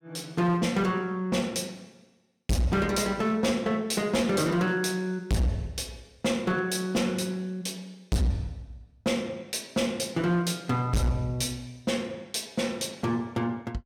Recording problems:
distortion; hard clipping, signal-to-distortion ratio 6 dB

